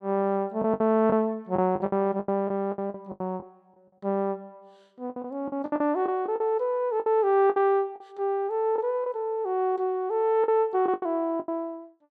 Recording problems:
packet loss; 11% of the sound replaced, filled with the last packet

